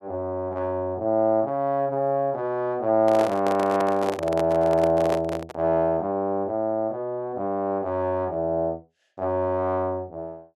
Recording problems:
microphone handling noise; from 3 to 5.5 s; peak -1 dB vs average level

